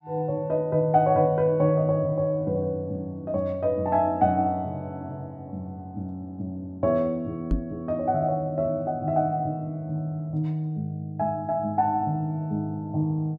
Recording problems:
microphone bump; at 7.5 s; peak +4 dB vs average level

